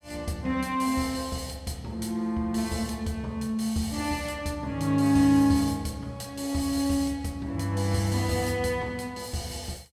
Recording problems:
none

